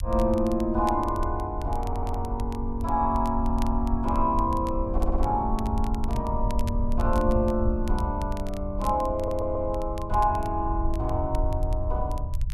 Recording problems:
low-frequency rumble; below 76 Hz, SNR 4 dB
crackle; vinyl, SNR 22 dB
audio stuttering; 4 times, first at 2 s

